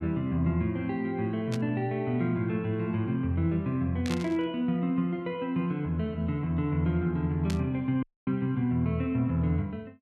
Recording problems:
burst of static; at 1.5 s, at 4 s and at 7.5 s; peak -4 dB vs average level
audio cutting out; at 8 s

